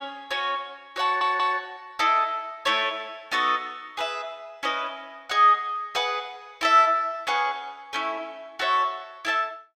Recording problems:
audio stuttering; at 1 s

